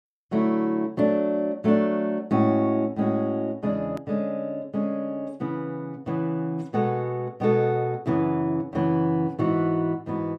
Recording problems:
click at an edit; at 4 s

